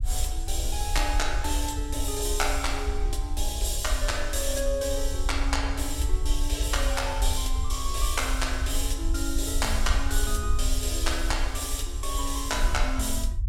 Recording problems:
rumble; below 58 Hz, SNR 1 dB

